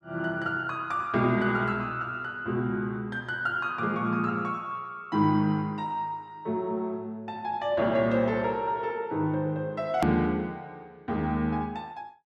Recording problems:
click at an edit; at 10 s

